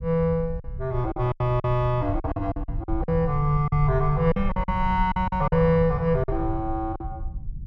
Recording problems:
low-frequency rumble; below 88 Hz, SNR 8 dB
lost packets; 11% of the sound replaced, filled with silence

